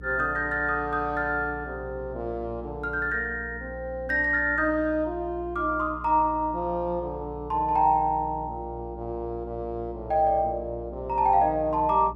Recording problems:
electrical hum; 60 Hz, harmonics up to 420 Hz, SNR 16 dB

